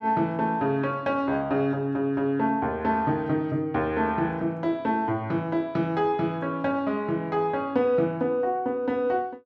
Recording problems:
none

